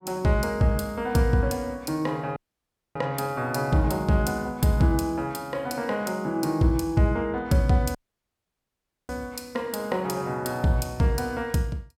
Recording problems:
dropout; at 2.5 s for 0.5 s and at 8 s for 1 s

